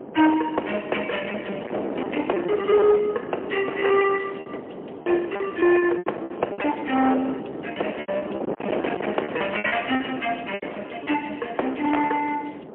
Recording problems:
phone line; 300 Hz to 3.2 kHz, AMR-NB, then MP3
distortion; hard clipping, signal-to-distortion ratio 10 dB
wind noise; below 700 Hz, SNR 9 dB
lost packets; 13% of the sound replaced, filled with repeated pitch periods

